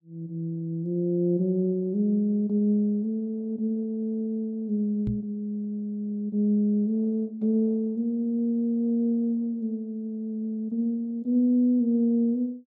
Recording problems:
knock on the microphone; at 5 s; peak 0 dB vs average level

